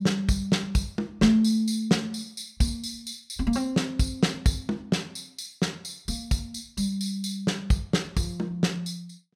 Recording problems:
none

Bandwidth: 16 kHz